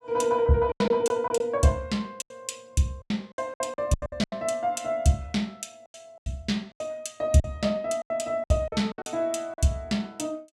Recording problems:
lost packets; 12% of the sound replaced, filled with silence

